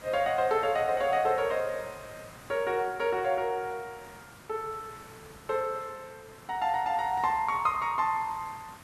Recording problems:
hiss; SNR 20 dB

